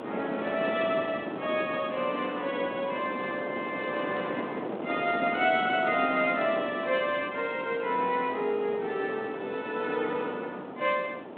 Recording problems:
phone line; 220 Hz to 3.6 kHz, G.726
wind on the microphone; below 740 Hz, SNR 7 dB

